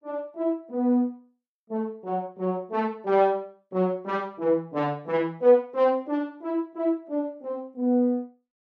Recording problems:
none

